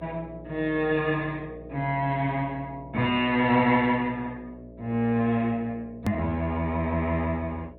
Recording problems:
low-pass filter; nothing above 4 kHz
lossy compression; Opus, log-spectral distance 2 dB
electrical hum; 60 Hz, harmonics up to 660 Hz, SNR 19 dB
edit click; at 6 s

